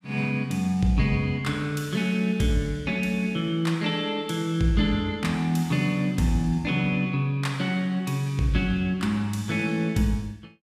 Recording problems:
none

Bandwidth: 15.5 kHz